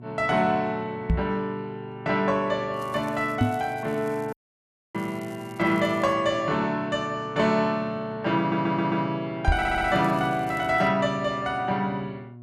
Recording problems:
hum; 60 Hz, harmonics up to 720 Hz, SNR 18 dB
microphone bump; at 1 s, at 3.5 s and at 9.5 s; peak +7 dB vs average level
crackling; from 2.5 to 6 s and from 9.5 to 11 s; loose cable, SNR 27 dB
dropout; at 4.5 s for 0.5 s
stutter; at 8.5 s and at 9.5 s

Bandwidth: 13 kHz